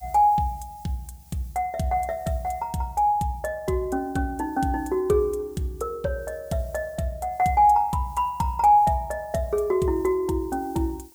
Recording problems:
background hiss; slope +4 dB per octave, SNR 28 dB

